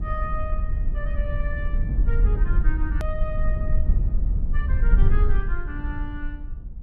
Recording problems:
rumble; below 56 Hz, SNR -11 dB
hard cut with a click; at 3 s

